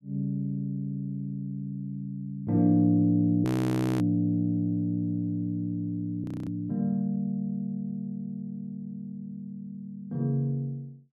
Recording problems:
frozen audio; at 3.5 s for 0.5 s and at 6 s

